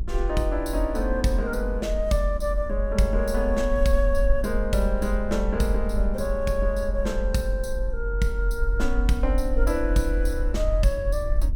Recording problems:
hum; 60 Hz, harmonics up to 780 Hz, SNR 22 dB
low-frequency rumble; below 46 Hz, strongest tone 44 Hz, SNR 2 dB

